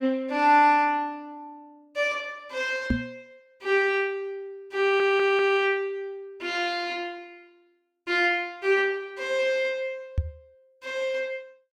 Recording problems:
microphone bump; at 3 s and at 10 s; peak +4 dB vs average level
stutter; at 5 s

